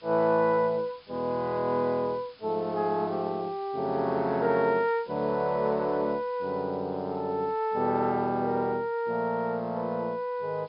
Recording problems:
treble cut off; nothing above 5.5 kHz
hiss; SNR 27 dB

